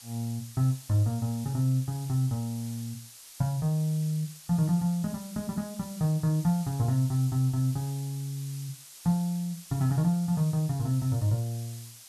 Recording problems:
background hiss; slope +3 dB per octave, SNR 17 dB

